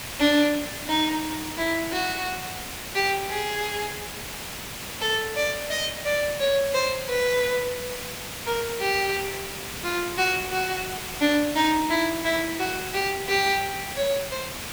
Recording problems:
hiss; slope -1 dB per octave, SNR 8 dB

